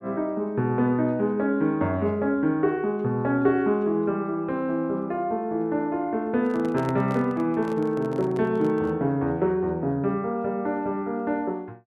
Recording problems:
handling noise; from 6.5 to 9 s; peak -6 dB vs average level

